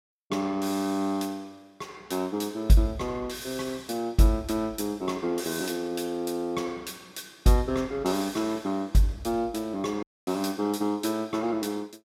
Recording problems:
audio cutting out; at 10 s

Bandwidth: 16 kHz